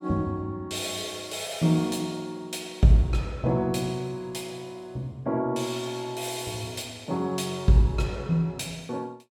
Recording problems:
none

